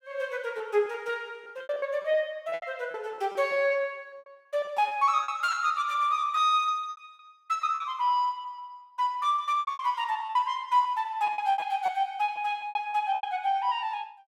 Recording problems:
packet loss; 15% of the sound replaced, filled with repeated pitch periods

